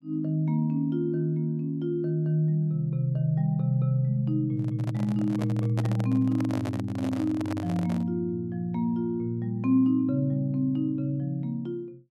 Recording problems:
handling noise; from 4.5 to 8 s; peak -3 dB vs average level

